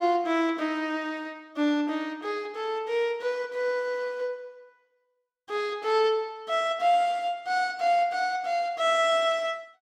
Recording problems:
none

